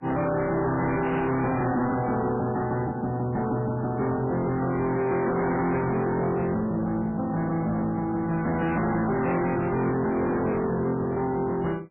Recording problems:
lossy compression; MP3, log-spectral distance 4 dB, nothing above 2.5 kHz
distortion; hard clipping, uneven, signal-to-distortion ratio 6 dB

